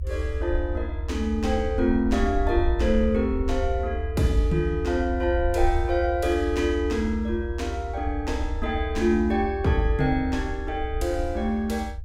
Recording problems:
rumble; below 78 Hz, SNR 5 dB

